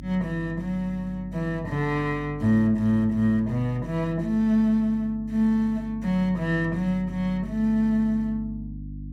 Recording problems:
electrical hum; 50 Hz, harmonics up to 300 Hz, SNR 14 dB

